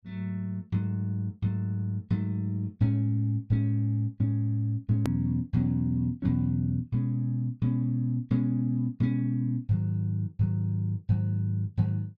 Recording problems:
edit click; at 5 s

